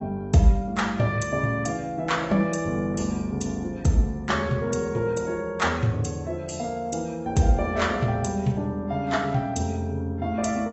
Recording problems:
lossy codec; AAC, log-spectral distance 3 dB, nothing above 7.8 kHz

